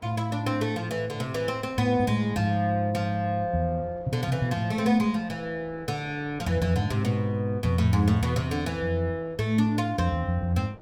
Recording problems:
wind on the microphone; below 630 Hz, SNR 24 dB

